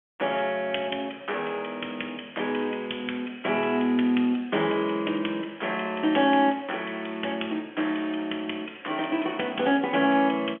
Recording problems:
telephone audio; 220 Hz to 3.3 kHz, G.711

